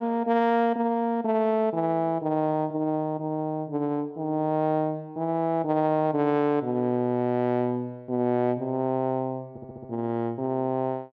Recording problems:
stutter; at 9.5 s

